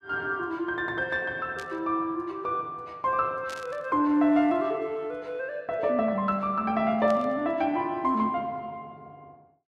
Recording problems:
burst of static; at 1.5 s, at 3.5 s and at 7 s; peak -10 dB vs average level

